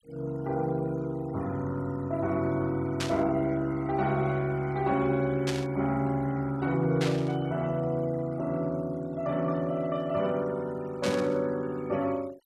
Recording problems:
noise reduction artefacts; signal-to-artefact ratio 24 dB
static burst; 4 times, first at 3 s; peak 0 dB vs average level

